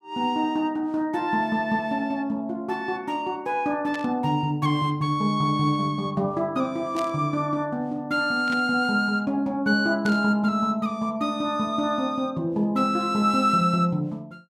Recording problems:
static burst; 4 times, first at 4 s; peak -9 dB vs average level

